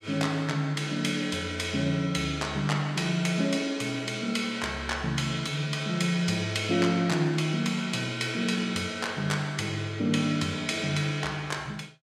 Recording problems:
none

